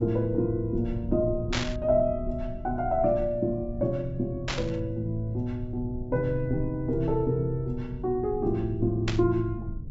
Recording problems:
treble cut off; nothing above 8 kHz
low-frequency rumble; below 100 Hz, SNR 11 dB
static burst; at 1.5 s, at 4.5 s and at 9 s; peak +3 dB vs average level

